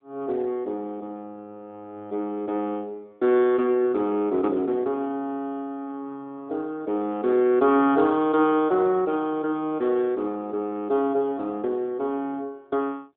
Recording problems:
telephone audio; 220 Hz to 3.4 kHz, AMR-NB

